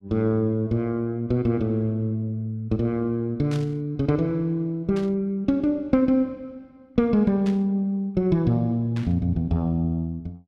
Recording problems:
burst of static; 4 times, first at 3.5 s; peak -12 dB vs average level

